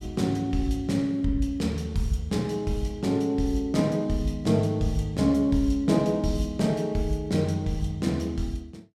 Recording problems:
none

